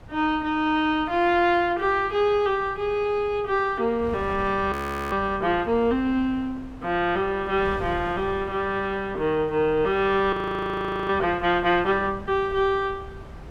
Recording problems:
wind on the microphone; below 330 Hz, SNR 18 dB
frozen audio; at 4.5 s and at 10 s for 1 s

